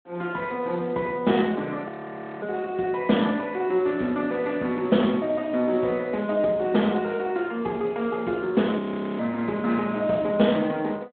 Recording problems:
telephone audio; 150 Hz to 3.6 kHz, Speex
audio freezing; at 2 s for 0.5 s and at 9 s

